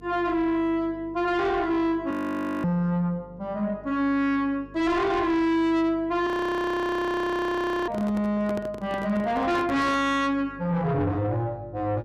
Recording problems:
distorted audio; soft clipping, signal-to-distortion ratio 8 dB
hum; 50 Hz, harmonics up to 450 Hz, SNR 23 dB
audio freezing; at 2 s for 0.5 s and at 6.5 s for 1.5 s
handling noise; from 8 to 10 s; peak -5 dB vs average level

